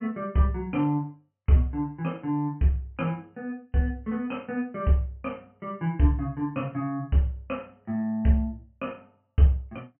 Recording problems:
treble missing; nothing above 3.1 kHz

